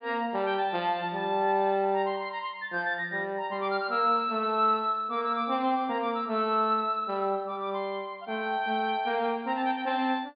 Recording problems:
treble cut off; nothing above 4.9 kHz

